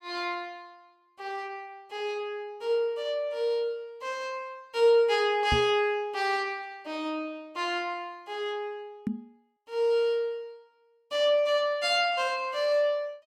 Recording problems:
microphone thump; at 5.5 s and at 9 s; peak +2 dB vs average level

